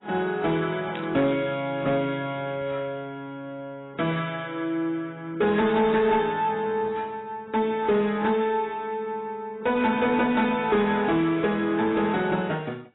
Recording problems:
codec artefacts; AAC, log-spectral distance 2 dB, nothing above 3.8 kHz
distortion; soft clipping, signal-to-distortion ratio 11 dB
static burst; at 1 s; peak -9 dB vs average level

